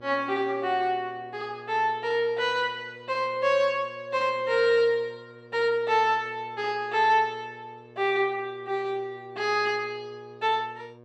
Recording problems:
electrical hum; 60 Hz, harmonics up to 1.7 kHz, SNR 24 dB

